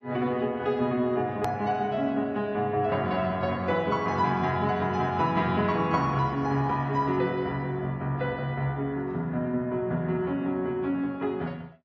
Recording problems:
codec artefacts; AAC, then AAC, log-spectral distance 2 dB, nothing above 13.1 kHz
click at an edit; at 1.5 s

